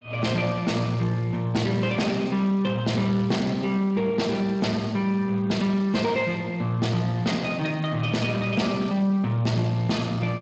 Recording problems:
lossy codec; Speex, log-spectral distance 4 dB, nothing above 7.3 kHz
distortion; soft clipping, signal-to-distortion ratio 11 dB

